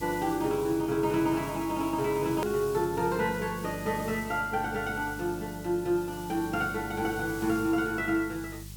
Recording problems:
hum; 50 Hz, harmonics up to 400 Hz, SNR 17 dB
hiss; slope +1 dB per octave, SNR 17 dB
edit click; at 2.5 s

